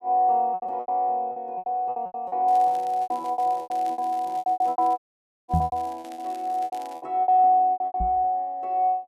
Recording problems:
lost packets; 20% of the sound replaced, filled with repeated pitch periods
crackle; from 2.5 to 7 s; loose cable, SNR 27 dB
dropout; at 5 s for 0.5 s
knock on the microphone; at 5.5 s and at 8 s; peak +4 dB vs average level

